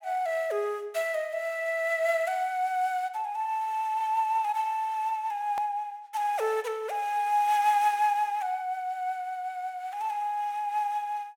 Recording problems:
edit click; at 5.5 s

